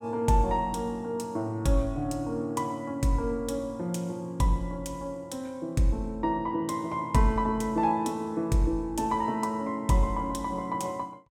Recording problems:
none

